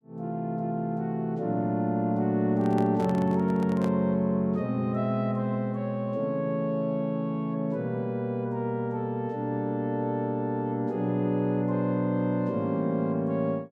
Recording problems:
microphone handling noise; from 2.5 to 4 s; peak -6 dB vs average level

